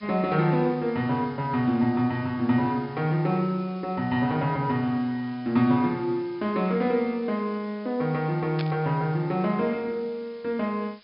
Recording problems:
treble cut off; nothing above 5.5 kHz
background hiss; SNR 28 dB
static burst; at 8.5 s; peak -5 dB vs average level

